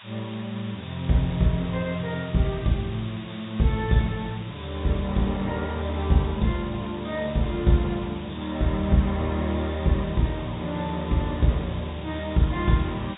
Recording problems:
treble cut off; nothing above 4 kHz
hiss; SNR 17 dB

